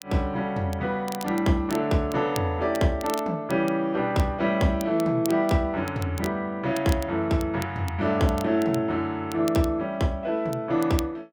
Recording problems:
crackle; vinyl, SNR 18 dB

